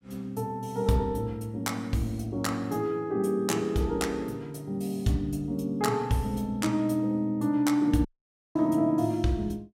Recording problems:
dropout; at 8 s for 0.5 s

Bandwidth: 16 kHz